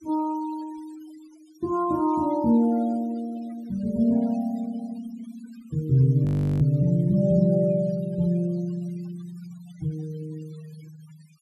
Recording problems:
denoising artefacts; signal-to-artefact ratio 25 dB
audio freezing; at 6.5 s

